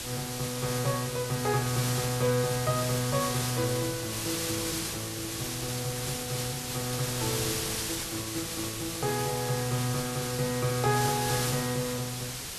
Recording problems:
background hiss; slope 0 dB per octave, SNR 2 dB

